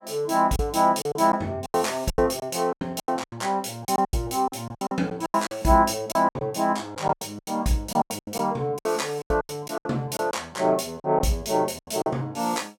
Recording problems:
packet loss; 15% of the sound replaced, filled with silence

